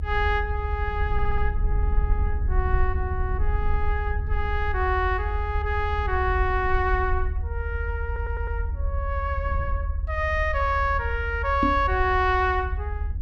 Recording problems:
low-frequency rumble; below 76 Hz, SNR 2 dB
audio stuttering; at 1 s and at 8 s
knock on the microphone; at 12 s; peak +5 dB vs average level

